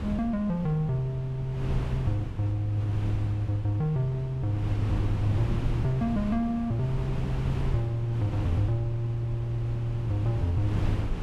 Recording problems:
wind noise; below 180 Hz, SNR 6 dB

